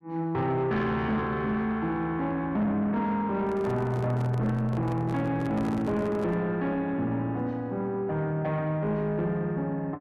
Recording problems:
distortion; soft clipping, signal-to-distortion ratio 12 dB
handling noise; from 3.5 to 6.5 s; peak -4 dB vs average level

